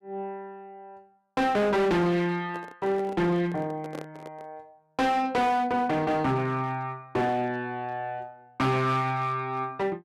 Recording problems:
distortion; hard clipping, uneven, signal-to-distortion ratio 7 dB
handling noise; from 2.5 to 4.5 s; peak -8 dB vs average level

